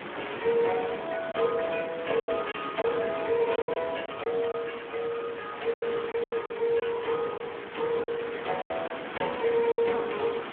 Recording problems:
phone line; 280 Hz to 3.5 kHz, Speex
hiss; SNR 9 dB
wind noise; below 480 Hz, SNR 19 dB
packet loss; 8% of the sound replaced, filled with silence

